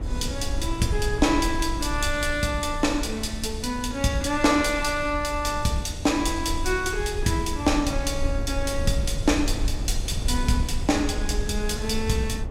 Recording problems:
low-frequency rumble; below 74 Hz, SNR 6 dB

